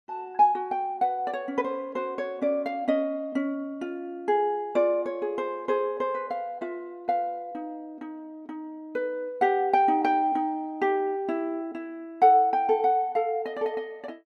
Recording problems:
none

